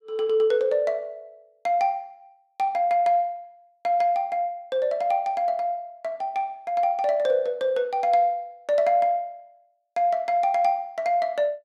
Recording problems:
none

